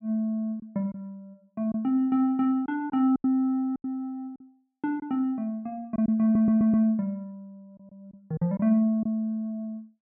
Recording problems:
lost packets; 6% of the sound replaced, filled with silence
stutter; at 6 s

